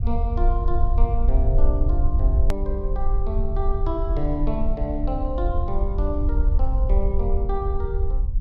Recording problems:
low-frequency rumble; below 56 Hz, SNR -5 dB
edit click; at 2.5 s

